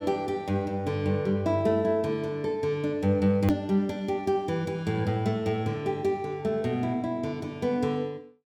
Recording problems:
click at an edit; at 3.5 s

